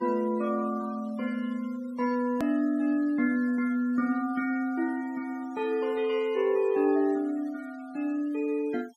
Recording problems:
denoising artefacts; signal-to-artefact ratio 25 dB
edit click; at 2.5 s

